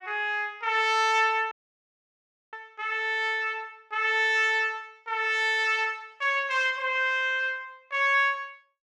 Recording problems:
dropout; at 1.5 s for 1 s

